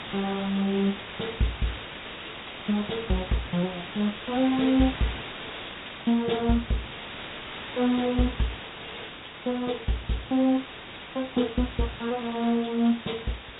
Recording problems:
treble missing; nothing above 4 kHz
background hiss; SNR 10 dB

